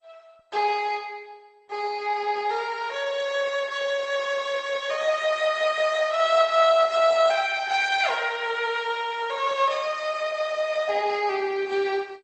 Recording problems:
lossy codec; Opus, then MP2, log-spectral distance 4 dB, nothing above 8 kHz

